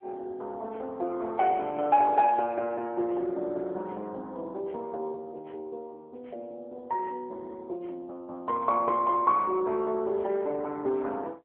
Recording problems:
telephone audio; 280 Hz to 2.2 kHz, AMR-NB

